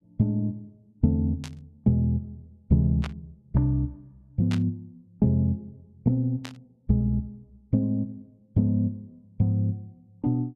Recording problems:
static burst; 4 times, first at 1.5 s; peak -7 dB vs average level

